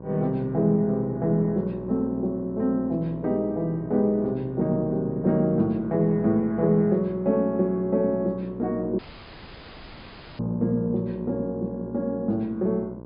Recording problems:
treble missing; nothing above 5.1 kHz
hum; 60 Hz, harmonics up to 1.1 kHz, SNR 14 dB
dropout; at 9 s for 1.5 s

